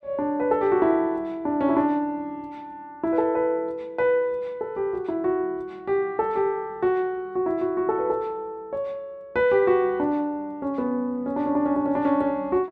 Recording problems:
none

